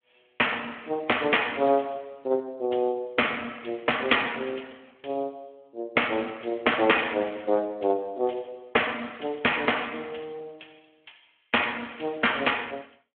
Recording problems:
phone line; 300 Hz to 3.4 kHz, Speex

